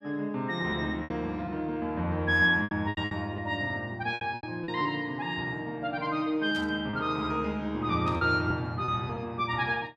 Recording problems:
lost packets; 7% of the sound replaced, filled with repeated pitch periods
burst of static; at 6.5 s and at 8 s; peak -12 dB vs average level

